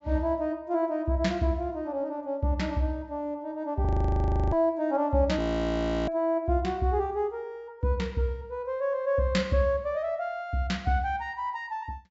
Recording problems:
treble cut off; nothing above 8 kHz
audio freezing; at 4 s for 0.5 s and at 5.5 s for 0.5 s

